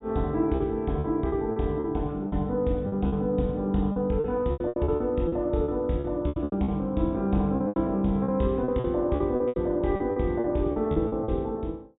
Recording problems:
low-pass filter; nothing above 4 kHz
packet loss; 14% of the sound replaced, filled with repeated pitch periods

